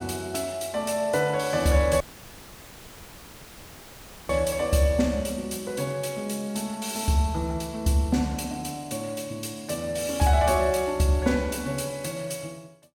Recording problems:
dropout; at 2 s for 2.5 s; filled with static

